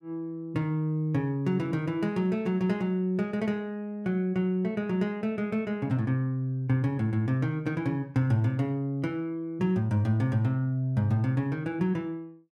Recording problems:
none

